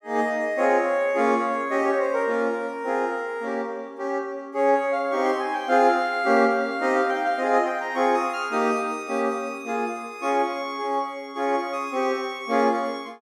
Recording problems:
none

